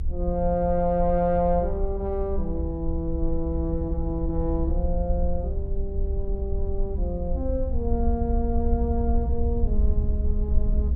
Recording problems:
low-frequency rumble; below 64 Hz, SNR 0 dB

